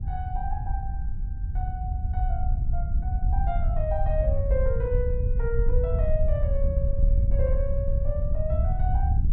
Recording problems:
wind on the microphone; below 74 Hz, SNR -6 dB

